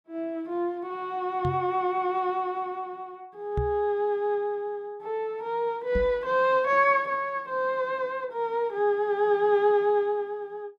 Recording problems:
microphone bump; at 1.5 s, at 3.5 s and at 6 s; peak +1 dB vs average level

